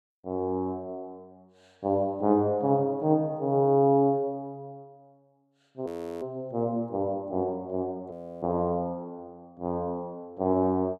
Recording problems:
frozen audio; at 6 s and at 8 s

